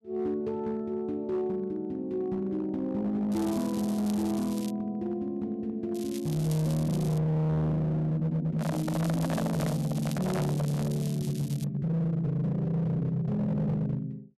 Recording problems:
distorted audio; hard clipping, signal-to-distortion ratio 10 dB
crackle; from 3.5 to 4.5 s, from 6 to 7 s and from 8.5 to 12 s; loose cable, SNR 16 dB
microphone handling noise; from 8.5 to 11 s; peak 0 dB vs average level

